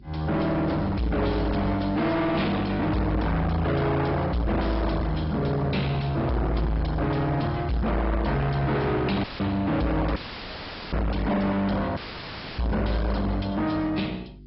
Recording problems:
treble cut off; nothing above 5.3 kHz
lossy compression; AAC, then G.722, log-spectral distance 3 dB
distorted audio; soft clipping, signal-to-distortion ratio 6 dB
hum; 50 Hz, harmonics up to 400 Hz, SNR 22 dB
dropout; at 9 s, at 10 s for 1 s and at 12 s for 0.5 s; filled with static

